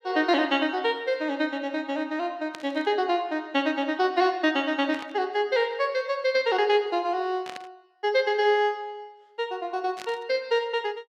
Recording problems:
burst of static; 4 times, first at 2.5 s; peak -8 dB vs average level

